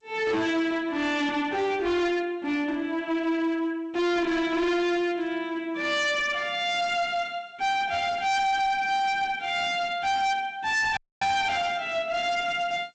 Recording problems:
codec artefacts; MP3, then G.722, log-spectral distance 2 dB
distorted audio; hard clipping, uneven, signal-to-distortion ratio 7 dB
audio cutting out; at 11 s

